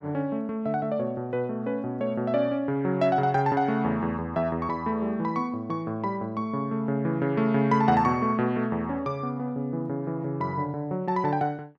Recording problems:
none

